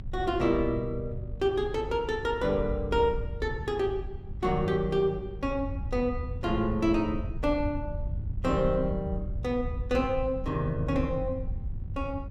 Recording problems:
electrical hum; 50 Hz, harmonics up to 550 Hz, SNR 17 dB
wind on the microphone; below 92 Hz, SNR 8 dB

